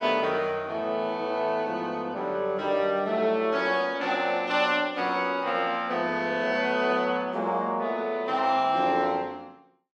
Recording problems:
none

